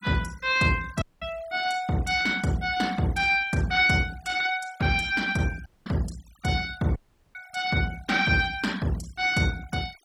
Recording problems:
denoising artefacts; signal-to-artefact ratio 21 dB
audio cutting out; at 1 s, at 5.5 s and at 7 s

